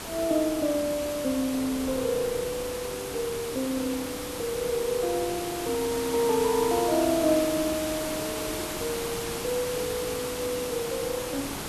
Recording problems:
background hiss; slope -3 dB per octave, SNR 5 dB
wind on the microphone; below 690 Hz, SNR 21 dB

